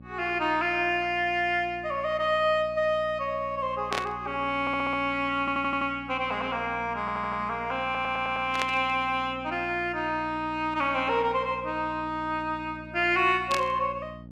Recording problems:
hum; 60 Hz, harmonics up to 600 Hz, SNR 18 dB
burst of static; at 4 s, at 8.5 s and at 14 s; peak +1 dB vs average level
stutter; 4 times, first at 4.5 s

